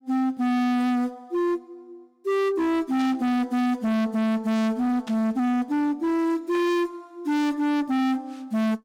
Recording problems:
distortion; hard clipping, signal-to-distortion ratio 7 dB
burst of static; at 3 s, at 5 s and at 6.5 s; peak -11 dB vs average level

